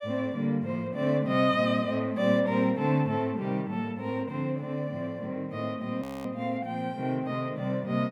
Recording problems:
audio freezing; at 6 s

